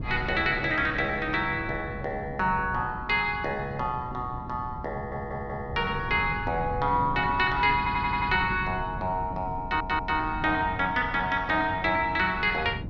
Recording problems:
wind on the microphone; below 200 Hz, SNR 12 dB
audio stuttering; at 5 s, at 8 s and at 9.5 s

